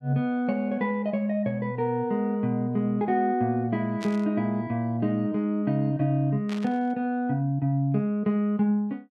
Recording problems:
static burst; at 4 s and at 6.5 s; peak -9 dB vs average level

